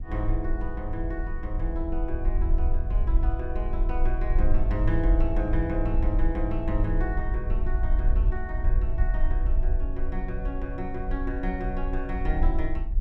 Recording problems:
wind noise; below 50 Hz, SNR -4 dB

